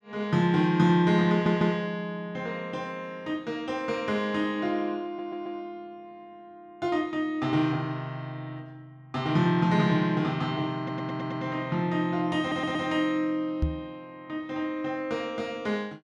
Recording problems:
stutter; 4 times, first at 1.5 s
microphone bump; at 14 s; peak +4 dB vs average level

